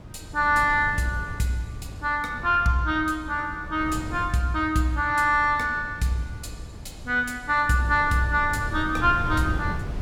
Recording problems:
wind noise; below 160 Hz, SNR 13 dB

